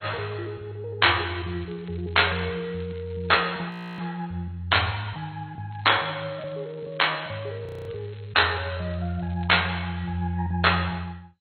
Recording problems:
lossy compression; MP2, log-spectral distance 5 dB, nothing above 4.2 kHz
crackle; from 1 to 4 s, from 5.5 to 8.5 s and from 8.5 to 10 s; loose cable, SNR 29 dB
audio freezing; at 3.5 s and at 7.5 s

